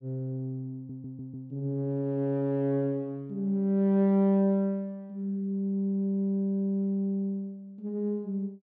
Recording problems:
audio stuttering; at 1 s

